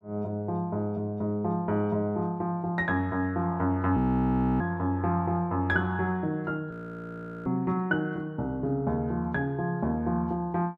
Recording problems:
audio freezing; at 4 s for 0.5 s and at 6.5 s for 1 s

